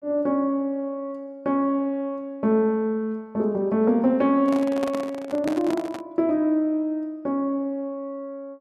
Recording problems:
microphone handling noise; from 4.5 to 6 s; peak -2 dB vs average level

